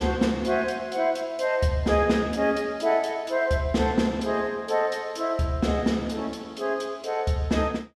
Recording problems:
none

